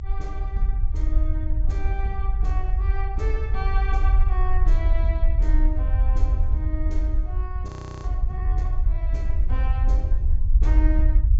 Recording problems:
treble cut off; nothing above 7.7 kHz
low-frequency rumble; below 56 Hz, SNR -11 dB
frozen audio; at 7.5 s

